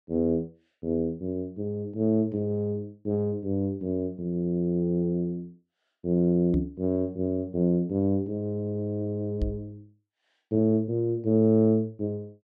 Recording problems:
knock on the microphone; at 6.5 s and at 9.5 s; peak +3 dB vs average level

